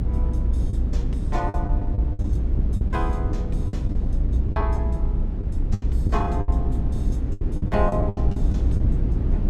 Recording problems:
rumble; below 96 Hz, SNR -7 dB
lost packets; 12% of the sound replaced, filled with the last packet

